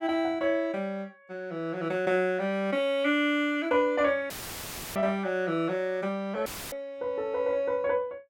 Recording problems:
audio cutting out; at 4.5 s for 0.5 s and at 6.5 s; filled with static

